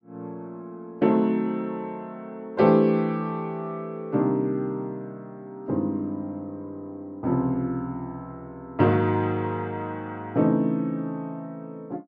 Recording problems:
none

